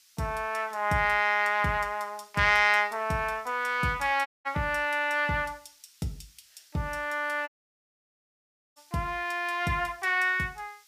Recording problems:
background hiss; SNR 30 dB
audio cutting out; at 4.5 s and at 7.5 s for 1.5 s

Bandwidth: 15 kHz